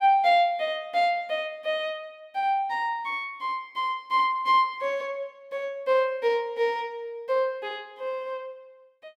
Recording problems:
none

